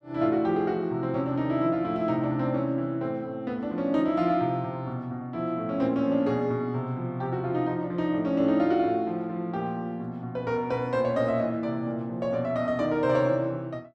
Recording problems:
none

